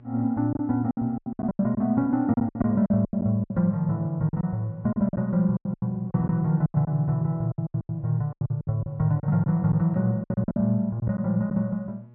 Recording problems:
hum; 60 Hz, harmonics up to 840 Hz, SNR 26 dB
packet loss; 15% of the sound replaced, filled with silence

